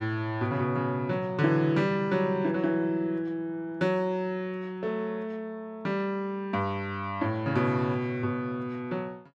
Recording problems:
none

